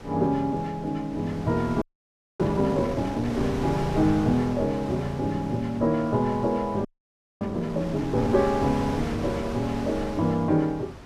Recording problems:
wind on the microphone; below 820 Hz, SNR 10 dB
audio freezing; at 2 s for 0.5 s and at 7 s for 0.5 s

